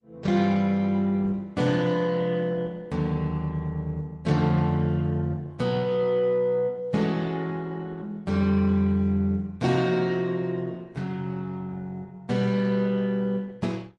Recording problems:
lossy compression; MP3, then Opus, log-spectral distance 2 dB, nothing above 10.1 kHz

